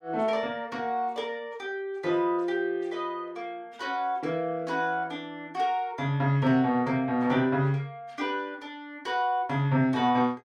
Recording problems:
none

